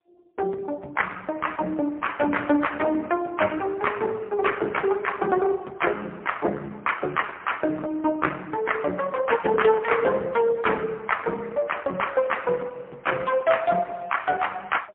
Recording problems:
telephone audio; 240 Hz to 3.4 kHz, AMR-NB, then MP3

